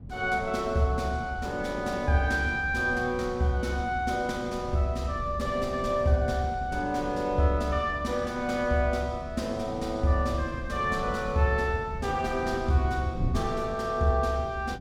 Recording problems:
wind noise; below 150 Hz, SNR 12 dB

